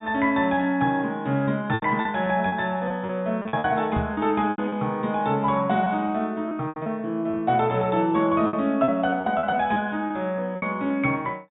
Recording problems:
treble missing; nothing above 4 kHz
lost packets; 10% of the sound replaced, filled with repeated pitch periods
knock on the microphone; at 4 s; peak -1 dB vs average level

